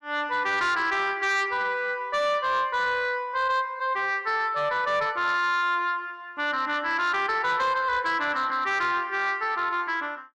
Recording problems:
distortion; soft clipping, signal-to-distortion ratio 12 dB

